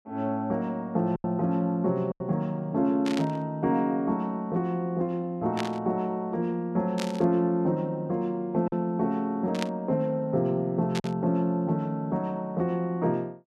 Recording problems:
lost packets; 1.8% of the sound replaced, filled with silence
static burst; 5 times, first at 3 s; peak -1 dB vs average level

